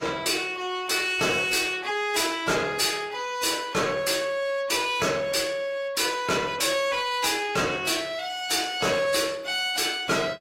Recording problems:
lossy compression; AAC, log-spectral distance 4 dB, nothing above 15.5 kHz
distorted audio; soft clipping, signal-to-distortion ratio 10 dB

